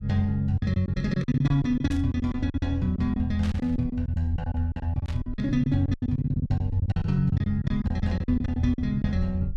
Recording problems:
rumble; below 78 Hz, SNR 13 dB
packet loss; 17% of the sound replaced, filled with silence
burst of static; at 2 s, at 3.5 s and at 5 s; peak -10 dB vs average level

